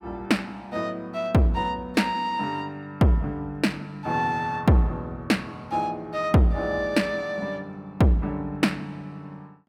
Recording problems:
none

